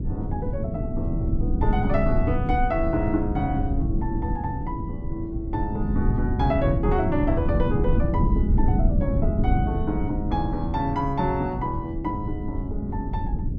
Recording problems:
rumble; below 150 Hz, SNR -1 dB

